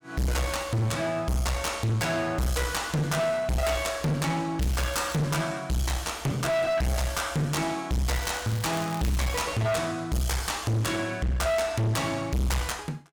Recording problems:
distorted audio; hard clipping, uneven, signal-to-distortion ratio 5 dB
crackle; at 4.5 s and from 8 to 9.5 s; loose cable, SNR 15 dB

